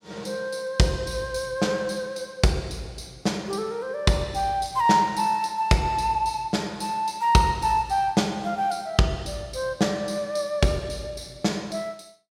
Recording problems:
none

